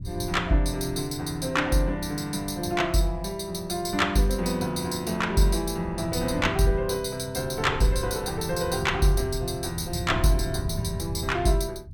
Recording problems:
rumble; below 130 Hz, SNR 11 dB

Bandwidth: 17.5 kHz